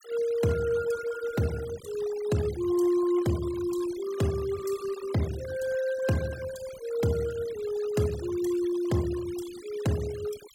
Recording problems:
noise reduction artefacts; signal-to-artefact ratio 16 dB

